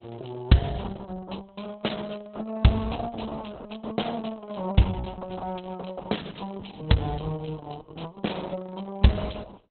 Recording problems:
lossy compression; Opus, log-spectral distance 8 dB, nothing above 4.1 kHz

